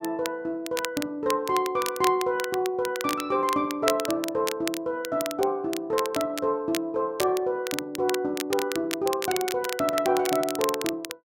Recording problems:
crackling; vinyl, SNR 8 dB

